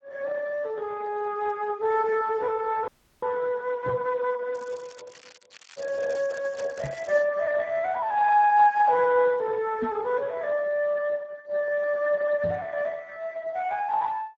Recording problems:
lossy codec; AAC, then Speex, log-spectral distance 4 dB
dropout; at 3 s
microphone bump; 4 times, first at 4 s; peak -2 dB vs average level
crackling; from 4.5 to 7 s; loose cable, SNR 23 dB

